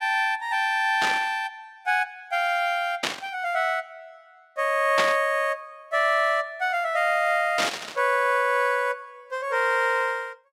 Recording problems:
burst of static; 4 times, first at 1 s; peak +3 dB vs average level

